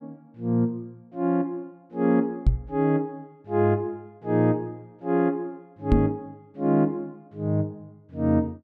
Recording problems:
knock on the microphone; at 2.5 s and at 6 s; peak +8 dB vs average level

